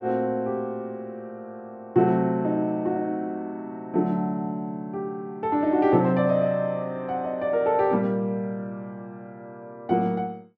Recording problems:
none

